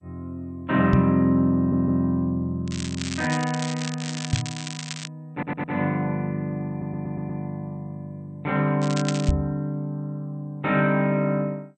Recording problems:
codec artefacts; MP2, log-spectral distance 4 dB, nothing above 13.1 kHz
knock on the microphone; at 1 s, at 4.5 s and at 9.5 s; peak +8 dB vs average level
stutter; at 1.5 s, at 5.5 s and at 6.5 s
crackling; from 2.5 to 5 s and at 9 s; loose cable, SNR 10 dB

